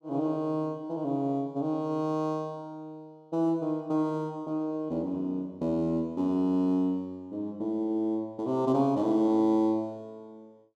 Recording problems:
none

